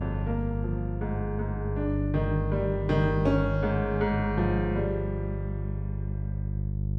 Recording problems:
electrical hum; 50 Hz, harmonics up to 400 Hz, SNR 2 dB

